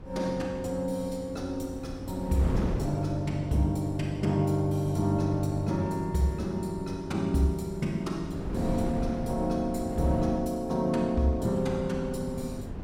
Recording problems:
wind on the microphone; below 260 Hz, SNR 9 dB

